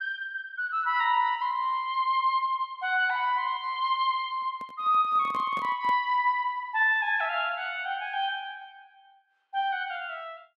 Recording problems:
handling noise; from 4.5 to 6 s; peak -11 dB vs average level

